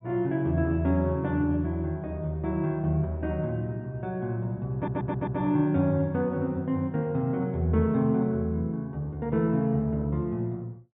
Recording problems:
treble cut off; nothing above 4 kHz
audio stuttering; at 5 s

